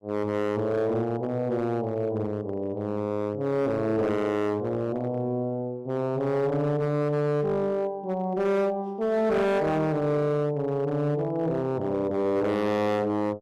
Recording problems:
distortion; hard clipping, signal-to-distortion ratio 7 dB

